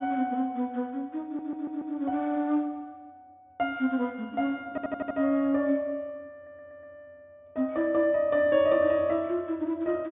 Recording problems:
treble missing; nothing above 3.6 kHz
audio stuttering; at 1.5 s, at 4.5 s and at 6.5 s

